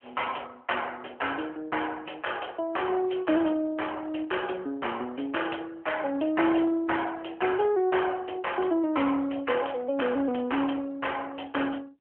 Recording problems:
phone line; 240 Hz to 3.2 kHz, AMR-NB

